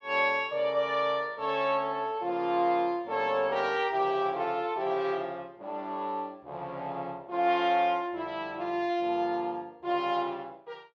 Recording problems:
none

